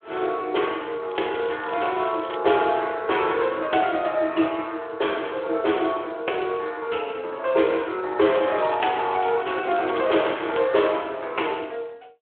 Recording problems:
phone line; 280 Hz to 3.5 kHz, Speex
crackle; from 1 to 2.5 s and from 8.5 to 11 s; loose cable, SNR 19 dB

